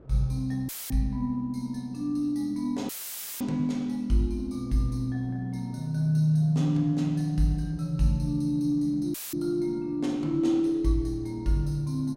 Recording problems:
wind on the microphone; below 450 Hz, SNR 26 dB
dropout; at 0.5 s, at 3 s for 0.5 s and at 9 s; filled with static

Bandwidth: 16 kHz